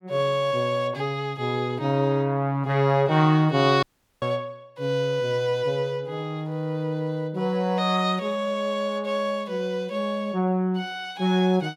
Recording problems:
dropout; at 4 s

